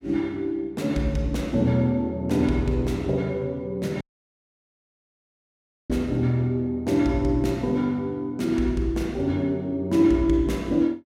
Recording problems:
dropout; at 4 s for 2 s

